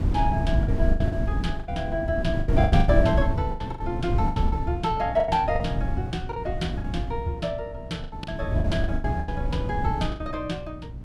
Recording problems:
hum; 60 Hz, harmonics up to 600 Hz, SNR 15 dB
wind noise; below 130 Hz, SNR -1 dB
packet loss; 13% of the sound replaced, filled with the last packet

